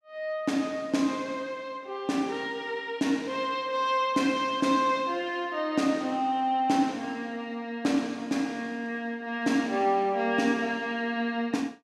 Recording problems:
none

